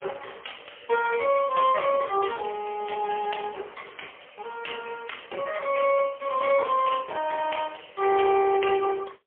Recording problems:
telephone audio; 320 Hz to 3.1 kHz, AMR-NB, then MP3

